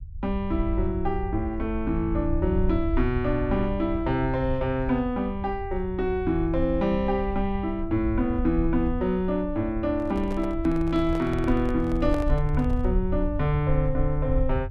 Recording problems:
low-frequency rumble; below 74 Hz, SNR 6 dB
handling noise; from 10 to 13 s; peak -5 dB vs average level

